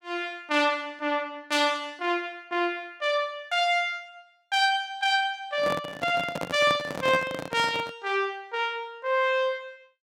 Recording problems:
handling noise; from 5.5 to 8 s; peak -2 dB vs average level

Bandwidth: 16 kHz